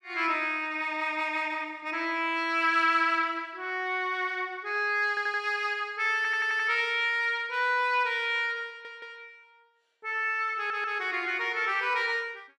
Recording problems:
stutter; 4 times, first at 5 s

